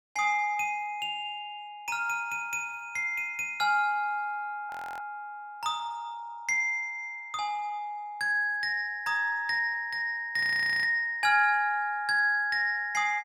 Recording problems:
frozen audio; at 4.5 s and at 10 s

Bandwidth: 18 kHz